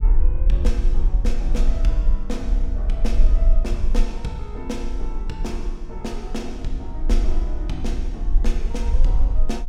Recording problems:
rumble; below 42 Hz, strongest tone 22 Hz, SNR -8 dB

